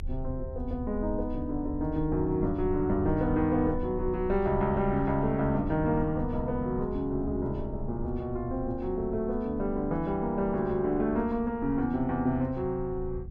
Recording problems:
rumble; below 76 Hz, strongest tone 24 Hz, SNR 11 dB

